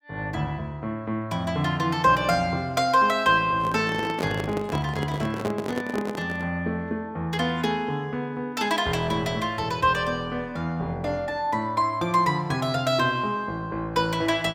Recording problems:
microphone handling noise; from 3.5 to 6.5 s; peak 0 dB vs average level

